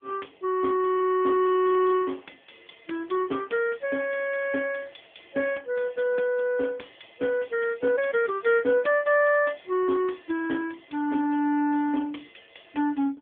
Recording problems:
telephone audio; 220 Hz to 3.4 kHz, AMR-NB

